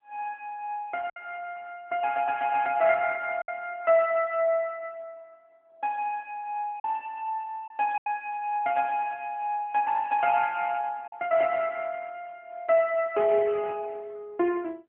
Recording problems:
telephone audio; 190 Hz to 3.3 kHz, AMR-NB
lost packets; 2% of the sound replaced, filled with silence

